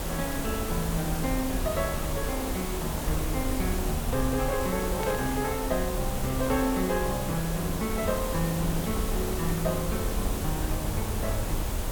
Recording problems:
background hiss; slope -5 dB per octave, SNR 3 dB
rumble; below 70 Hz, SNR 5 dB
burst of static; at 5 s; peak -5 dB vs average level

